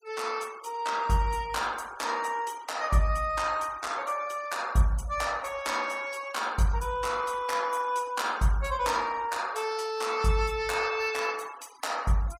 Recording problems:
noise reduction artefacts; signal-to-artefact ratio 21 dB

